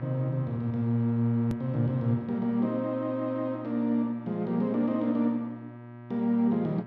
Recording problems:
mains hum; 60 Hz, harmonics up to 1.9 kHz, SNR 14 dB
edit click; at 1.5 s

